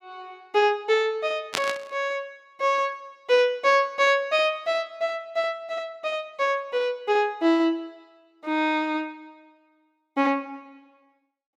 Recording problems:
burst of static; at 1.5 s; peak +2 dB vs average level

